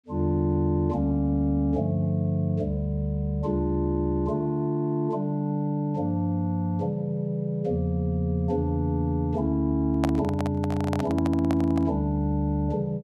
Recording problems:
microphone handling noise; from 10 to 12 s; peak +1 dB vs average level

